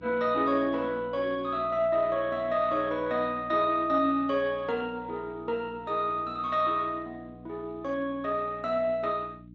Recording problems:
lossy compression; Speex, log-spectral distance 2 dB, nothing above 7.1 kHz
electrical hum; 60 Hz, harmonics up to 300 Hz, SNR 20 dB

